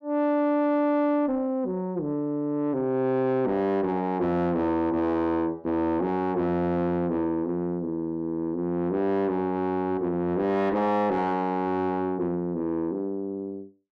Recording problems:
distortion; soft clipping, signal-to-distortion ratio 8 dB

